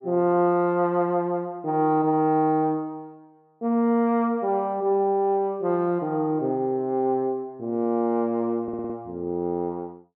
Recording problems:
stutter; at 8.5 s

